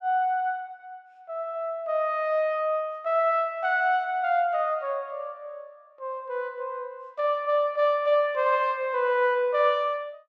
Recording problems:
none

